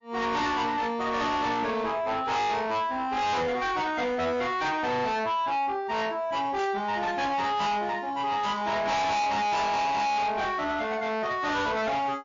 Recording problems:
codec artefacts; MP3, log-spectral distance 2 dB, nothing above 6.7 kHz
distortion; soft clipping, signal-to-distortion ratio 6 dB
static burst; at 6.5 s and at 8.5 s; peak -10 dB vs average level

